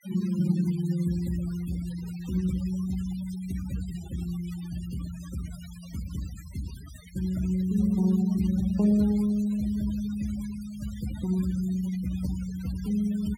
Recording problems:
denoising artefacts; signal-to-artefact ratio 19 dB

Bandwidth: 17 kHz